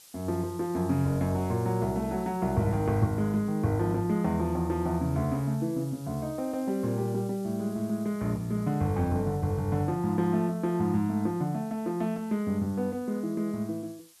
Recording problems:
hiss; slope +2 dB per octave, SNR 23 dB

